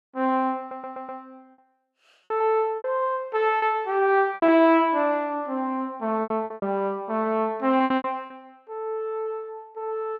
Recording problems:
lost packets; 9% of the sound replaced, filled with repeated pitch periods
audio stuttering; at 0.5 s

